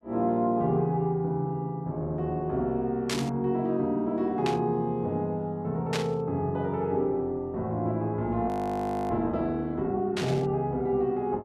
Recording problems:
static burst; 4 times, first at 3 s; peak 0 dB vs average level
frozen audio; at 8.5 s for 0.5 s

